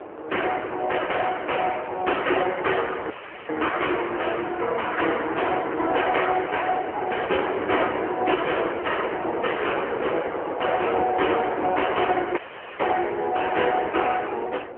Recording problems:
phone line; 300 Hz to 3.1 kHz, AMR-NB
wind noise; below 820 Hz, SNR 10 dB
audio cutting out; at 3 s and at 12 s

